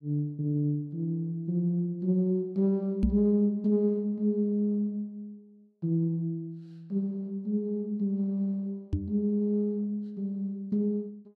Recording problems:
knock on the microphone; at 3 s and at 9 s; peak +6 dB vs average level

